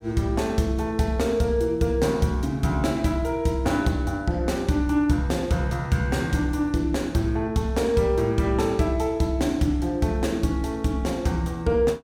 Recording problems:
none

